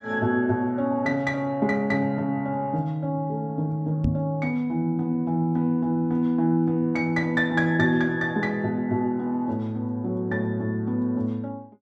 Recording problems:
microphone thump; at 4 s; peak +3 dB vs average level

